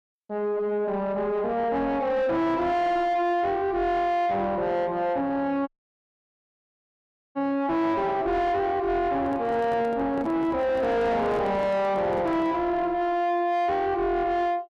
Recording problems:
distortion; soft clipping, signal-to-distortion ratio 7 dB
audio cutting out; at 5.5 s for 1.5 s
handling noise; from 9 to 13 s; peak -6 dB vs average level

